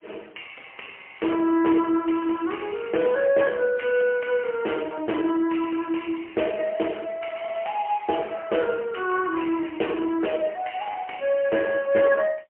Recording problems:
phone line; 260 Hz to 3.1 kHz, AMR-NB, then MP3

